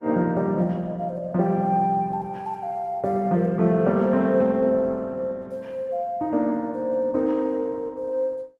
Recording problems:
lossy compression; Opus, log-spectral distance 2 dB

